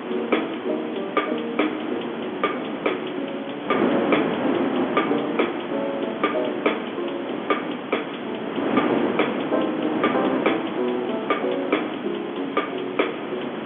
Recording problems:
telephone audio; 190 Hz to 3.4 kHz, G.711
hiss; SNR 15 dB
wind on the microphone; below 830 Hz, SNR 2 dB

